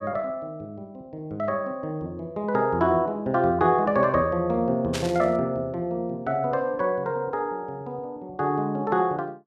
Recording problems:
static burst; at 5 s; peak -2 dB vs average level

